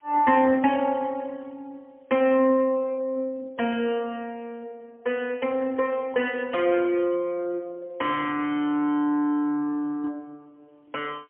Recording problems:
phone line; 220 Hz to 3.2 kHz, AMR-NB, then MP3
background hiss; SNR 48 dB

